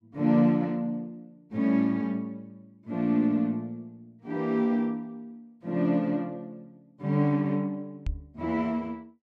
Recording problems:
microphone thump; at 8 s; peak -2 dB vs average level

